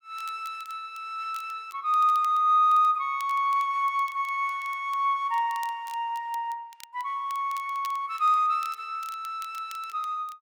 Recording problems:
crackle; vinyl, SNR 24 dB

